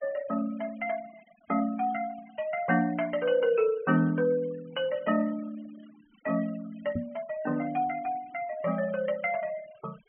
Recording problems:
treble cut off; nothing above 3.2 kHz
noise reduction artefacts; signal-to-artefact ratio 22 dB
knock on the microphone; at 7 s; peak +1 dB vs average level

